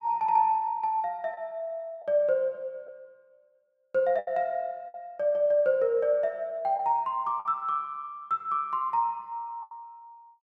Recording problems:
lost packets; 4% of the sound replaced, filled with the last packet

